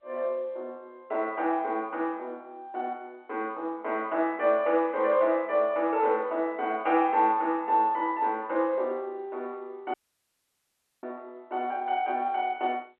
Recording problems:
telephone audio; 280 Hz to 3.3 kHz, G.711
audio cutting out; at 10 s for 1 s

